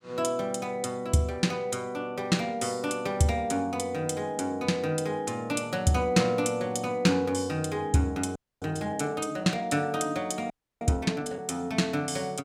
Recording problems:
frozen audio; at 8.5 s and at 11 s

